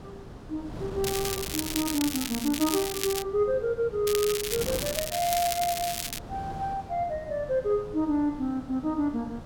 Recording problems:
wind on the microphone; below 480 Hz, SNR 13 dB
crackle; from 1 to 3 s and from 4 to 6 s; loose cable, SNR 3 dB

